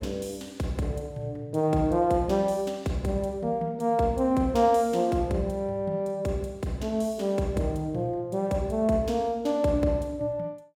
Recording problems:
none

